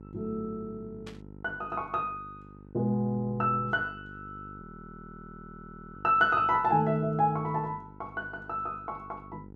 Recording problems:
hum; 50 Hz, harmonics up to 900 Hz, SNR 19 dB
burst of static; at 1 s; peak -13 dB vs average level
audio freezing; at 4.5 s for 1.5 s

